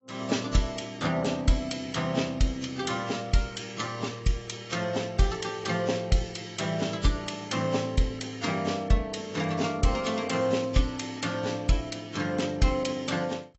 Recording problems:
codec artefacts; AAC, log-spectral distance 5 dB, nothing above 7.8 kHz

